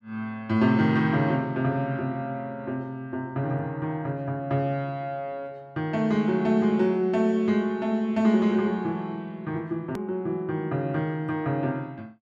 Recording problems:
edit click; at 10 s

